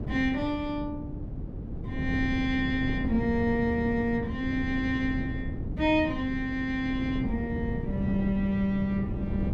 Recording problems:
wind on the microphone; below 220 Hz, SNR 6 dB

